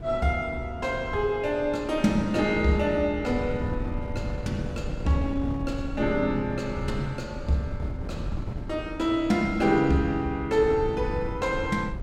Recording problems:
wind noise; below 160 Hz, SNR 9 dB

